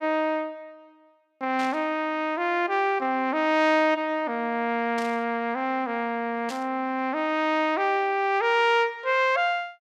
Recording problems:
static burst; at 1.5 s, at 5 s and at 6.5 s; peak -9 dB vs average level

